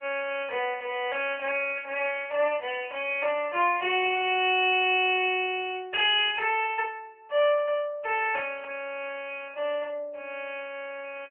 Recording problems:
telephone audio; 320 Hz to 3.1 kHz, AMR-NB

